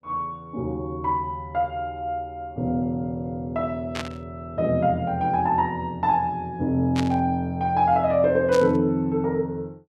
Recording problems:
static burst; at 4 s, at 7 s and at 8.5 s; peak -2 dB vs average level

